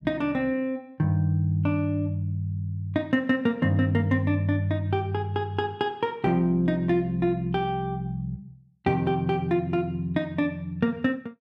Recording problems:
none

